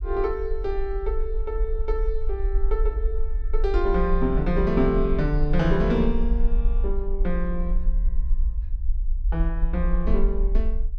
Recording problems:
rumble; below 46 Hz, SNR 0 dB

